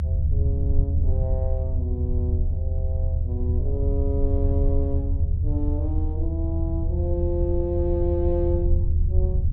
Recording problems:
low-frequency rumble; below 80 Hz, SNR -6 dB

